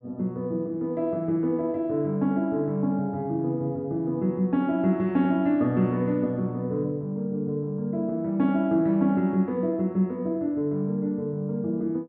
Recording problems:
treble cut off; nothing above 8 kHz

